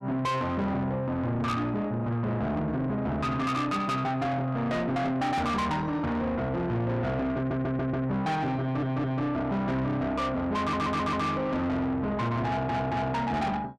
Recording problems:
distortion; soft clipping, signal-to-distortion ratio 8 dB
audio stuttering; 4 times, first at 7.5 s

